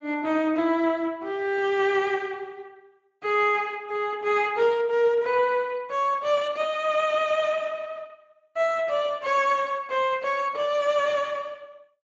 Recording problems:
lossy compression; Speex, log-spectral distance 3 dB

